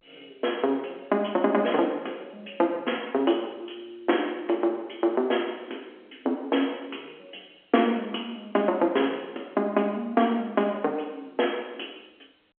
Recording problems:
phone line; 240 Hz to 3.4 kHz, G.711

